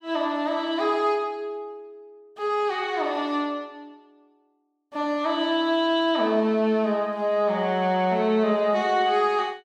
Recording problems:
none

